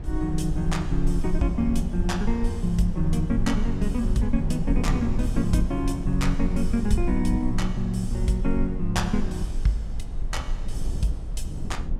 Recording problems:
rumble; below 48 Hz, strongest tone 18 Hz, SNR 5 dB
wind on the microphone; below 200 Hz, SNR 13 dB

